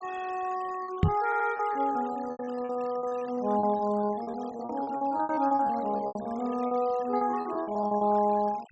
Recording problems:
treble cut off; nothing above 7.9 kHz
noise reduction artefacts; signal-to-artefact ratio 20 dB
packet loss; 18% of the sound replaced, filled with repeated pitch periods
knock on the microphone; at 1 s; peak +9 dB vs average level
audio stuttering; at 1.5 s

